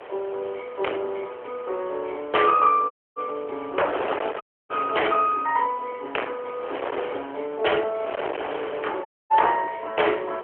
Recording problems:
telephone audio; 340 Hz to 3.2 kHz, AMR-NB
distorted audio; hard clipping, signal-to-distortion ratio 9 dB
wind noise; below 1.3 kHz, SNR 10 dB
audio cutting out; at 3 s, at 4.5 s and at 9 s

